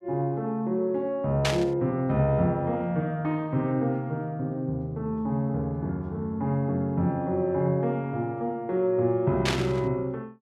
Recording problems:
static burst; at 1.5 s and at 9.5 s; peak +4 dB vs average level

